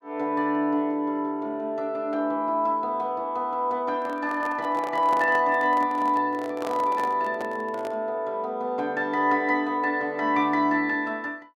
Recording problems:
handling noise; from 4 to 8 s; peak -5 dB vs average level

